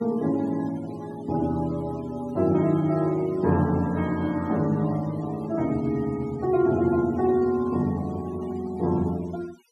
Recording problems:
noise reduction artefacts; signal-to-artefact ratio 21 dB

